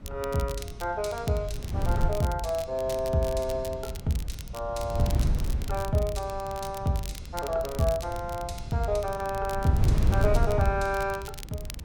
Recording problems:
wind on the microphone; below 110 Hz, SNR 3 dB
crackling; vinyl, SNR 15 dB

